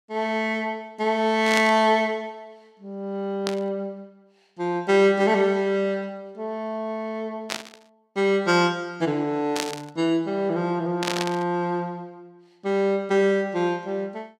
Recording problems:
static burst; 5 times, first at 1.5 s; peak +1 dB vs average level

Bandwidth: 16 kHz